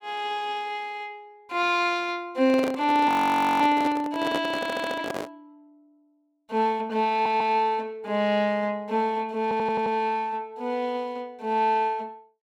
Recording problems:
handling noise; from 2.5 to 5.5 s; peak -1 dB vs average level
audio freezing; at 3 s for 0.5 s
stutter; at 4.5 s, at 7 s and at 9.5 s

